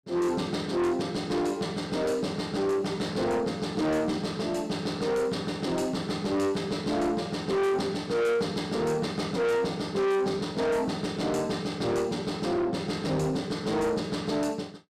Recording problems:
distortion; soft clipping, signal-to-distortion ratio 7 dB

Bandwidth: 14.5 kHz